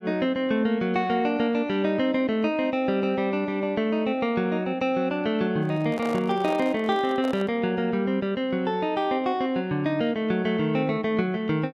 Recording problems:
microphone handling noise; from 5.5 to 7.5 s; peak -7 dB vs average level

